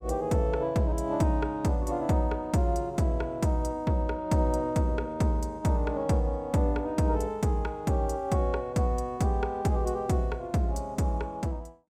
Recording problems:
none

